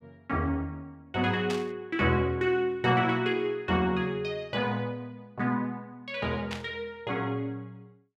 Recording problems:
burst of static; at 1.5 s and at 6.5 s; peak -3 dB vs average level

